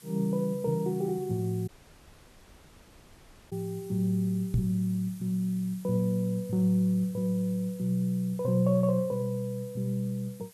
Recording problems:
background hiss; slope 0 dB per octave, SNR 23 dB
audio cutting out; at 1.5 s for 2 s
microphone bump; at 4.5 s; peak +4 dB vs average level

